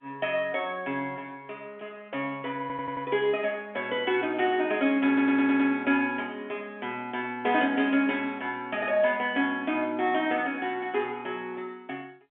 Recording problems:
telephone audio; 220 Hz to 3.5 kHz, G.711
stutter; at 2.5 s and at 5 s

